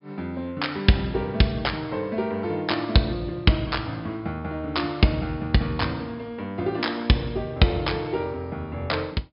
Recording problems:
treble missing; nothing above 5.5 kHz

